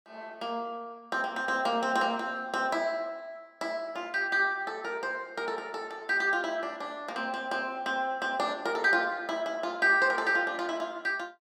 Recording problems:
none

